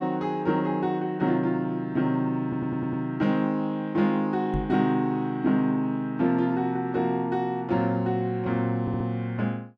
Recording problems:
stutter; at 2.5 s and at 9 s
knock on the microphone; at 4.5 s; peak -1 dB vs average level

